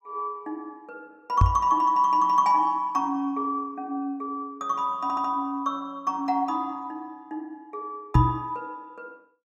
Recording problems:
microphone thump; at 1.5 s and at 8 s; peak +9 dB vs average level
stutter; at 5 s

